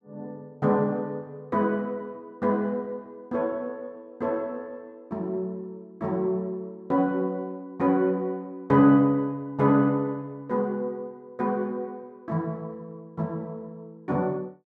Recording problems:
none

